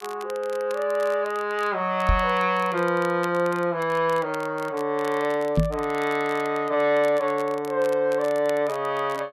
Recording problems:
crackling; vinyl, SNR 22 dB
microphone thump; at 2 s and at 5.5 s; peak +6 dB vs average level

